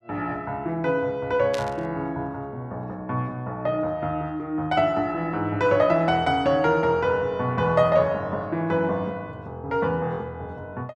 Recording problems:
burst of static; at 1.5 s; peak -5 dB vs average level

